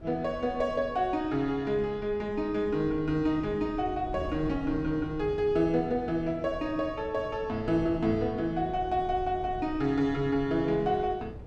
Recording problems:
wind on the microphone; below 220 Hz, SNR 15 dB

